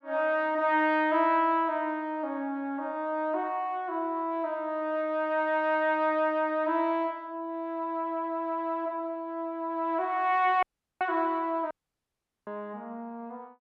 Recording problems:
audio cutting out; at 11 s and at 12 s for 1 s

